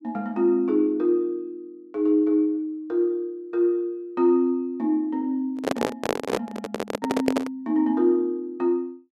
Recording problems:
microphone handling noise; from 5.5 to 7.5 s; peak +4 dB vs average level

